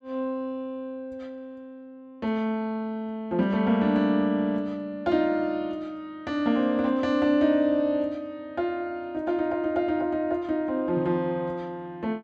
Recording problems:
none

